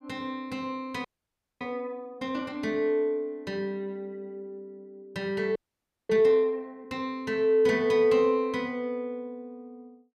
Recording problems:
frozen audio; at 1 s for 0.5 s and at 5.5 s for 0.5 s

